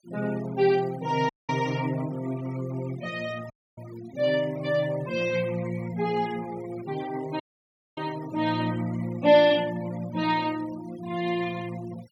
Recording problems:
denoising artefacts; signal-to-artefact ratio 20 dB
audio cutting out; at 1.5 s, at 3.5 s and at 7.5 s for 0.5 s

